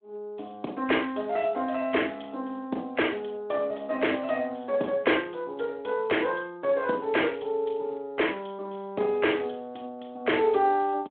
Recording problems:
phone line; 220 Hz to 3.5 kHz, Speex

